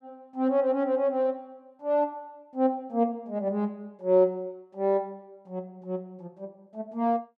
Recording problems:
none

